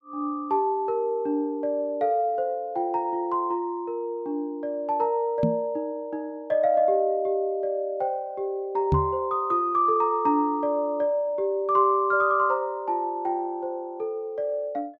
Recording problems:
knock on the microphone; at 5.5 s and at 9 s; peak +6 dB vs average level

